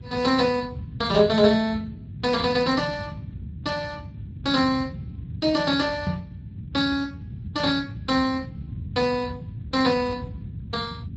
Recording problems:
codec artefacts; Speex, then MP3, log-spectral distance 3 dB, nothing above 7.8 kHz
low-frequency rumble; below 180 Hz, SNR 12 dB
knock on the microphone; at 6 s; peak +2 dB vs average level

